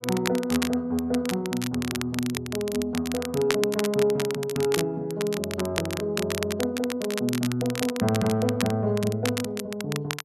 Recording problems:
crackling; vinyl, SNR 7 dB

